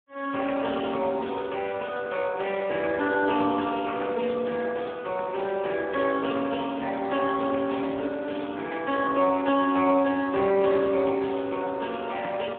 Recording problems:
phone line; 220 Hz to 2.7 kHz, Speex

